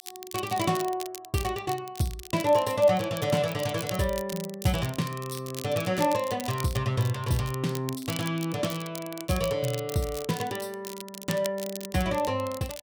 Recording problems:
crackle; vinyl, SNR 12 dB

